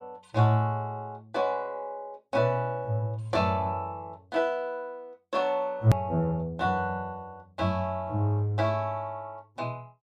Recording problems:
hard cut with a click; at 6 s

